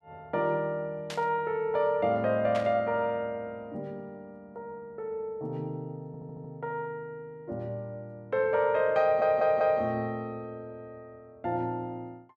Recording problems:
burst of static; at 1 s and at 2.5 s; peak -5 dB vs average level
audio stuttering; at 6 s and at 9 s

